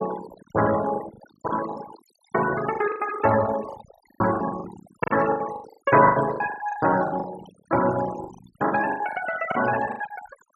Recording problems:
denoising artefacts; signal-to-artefact ratio 12 dB
packet loss; 16% of the sound replaced, filled with the last packet

